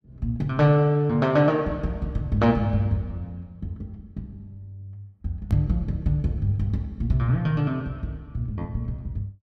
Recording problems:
hard cut with a click; at 5.5 s

